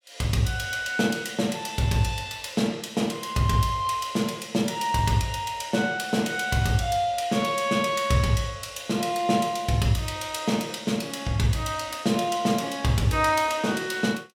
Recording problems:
none

